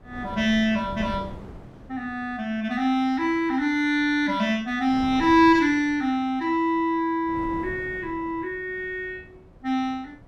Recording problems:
wind noise; below 380 Hz, SNR 20 dB

